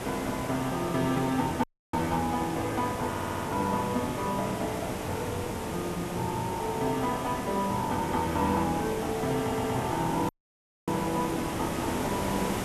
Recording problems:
hiss; slope -6 dB per octave, SNR 4 dB
dropout; at 1.5 s and at 10 s for 0.5 s
stutter; at 3 s and at 9.5 s

